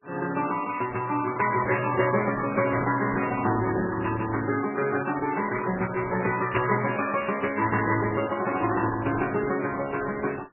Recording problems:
codec artefacts; Opus, then MP3, log-spectral distance 6 dB, nothing above 2.7 kHz

